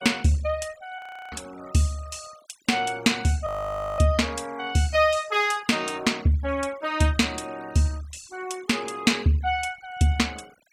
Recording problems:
denoising artefacts; signal-to-artefact ratio 23 dB
frozen audio; at 1 s and at 3.5 s for 0.5 s

